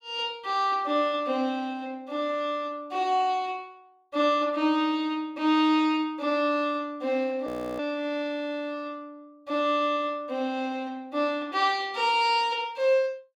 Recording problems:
frozen audio; at 7.5 s

